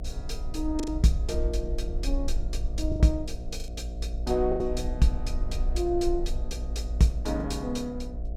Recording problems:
hum; 60 Hz, harmonics up to 720 Hz, SNR 15 dB
low-frequency rumble; below 56 Hz, SNR 4 dB
packet loss; 4% of the sound replaced, filled with the last packet

